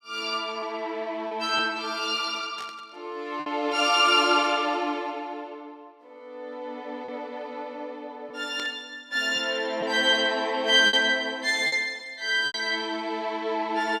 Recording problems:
lost packets; 3% of the sound replaced, filled with repeated pitch periods
burst of static; at 2.5 s, at 8.5 s and at 11 s; peak -10 dB vs average level

